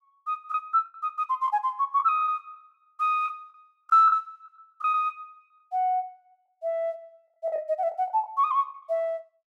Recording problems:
lost packets; 8% of the sound replaced, filled with the last packet

